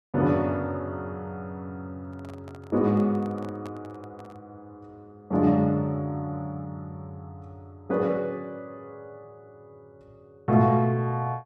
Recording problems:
microphone handling noise; from 2 to 4.5 s; peak -12 dB vs average level

